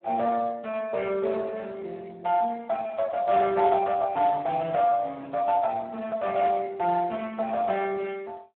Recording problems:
phone line; 240 Hz to 2.7 kHz, Speex

